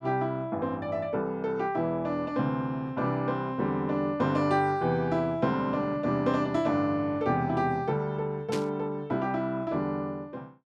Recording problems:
burst of static; at 8.5 s; peak -5 dB vs average level

